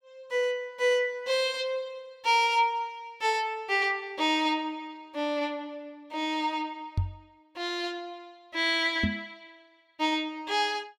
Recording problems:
knock on the microphone; at 7 s and at 9 s; peak +4 dB vs average level

